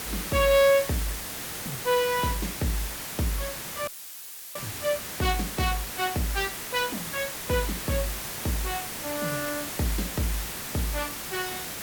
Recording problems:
hiss; slope -1 dB per octave, SNR 4 dB
dropout; at 4 s for 0.5 s; filled with static

